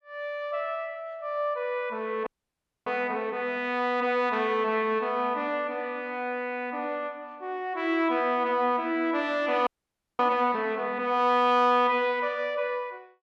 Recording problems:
frozen audio; at 2.5 s for 0.5 s and at 9.5 s for 0.5 s

